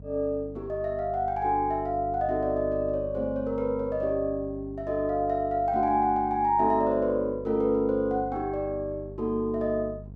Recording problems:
hum; 50 Hz, harmonics up to 500 Hz, SNR 16 dB

